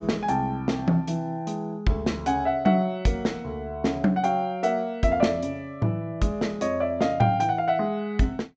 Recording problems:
treble missing; nothing above 8 kHz

